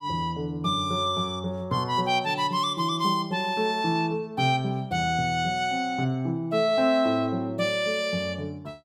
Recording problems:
none

